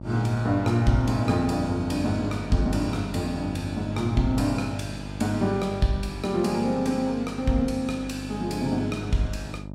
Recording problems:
hum; 50 Hz, harmonics up to 1 kHz, SNR 11 dB

